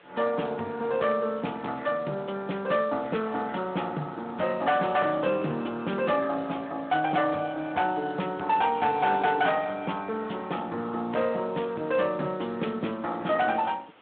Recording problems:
telephone audio; 190 Hz to 3.6 kHz, Speex
distortion; hard clipping, signal-to-distortion ratio 11 dB
background hiss; SNR 27 dB

